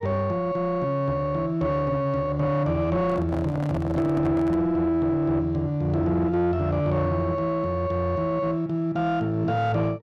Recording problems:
distortion; soft clipping, signal-to-distortion ratio 11 dB
handling noise; from 3 to 4.5 s; peak -2 dB vs average level

